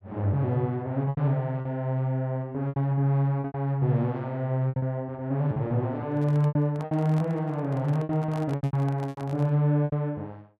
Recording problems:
lost packets; 10% of the sound replaced, filled with repeated pitch periods
handling noise; from 6 to 9.5 s; peak -11 dB vs average level

